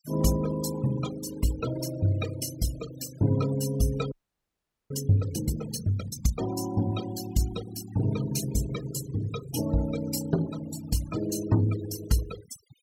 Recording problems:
denoising artefacts; signal-to-artefact ratio 13 dB
frozen audio; at 4 s for 1 s

